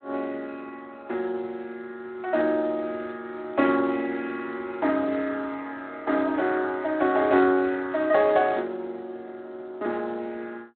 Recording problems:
telephone audio; 190 Hz to 3.8 kHz, Speex

